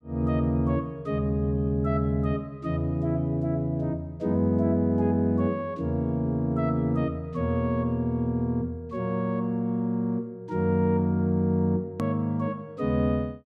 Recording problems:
hard cut with a click; at 12 s

